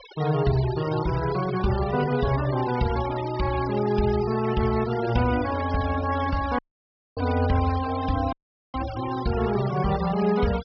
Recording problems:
treble missing; nothing above 5.5 kHz
denoising artefacts; signal-to-artefact ratio 14 dB
dropout; at 6.5 s for 0.5 s and at 8.5 s

